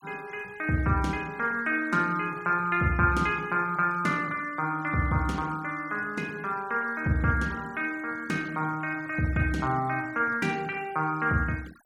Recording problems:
noise reduction artefacts; signal-to-artefact ratio 24 dB

